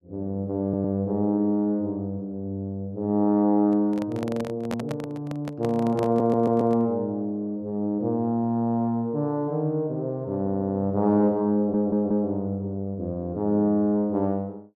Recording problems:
audio stuttering; 4 times, first at 0.5 s
microphone handling noise; from 3.5 to 7 s; peak -3 dB vs average level

